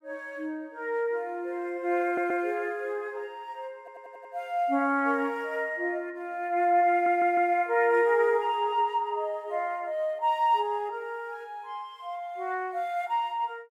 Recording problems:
audio stuttering; at 2 s, at 4 s and at 7 s

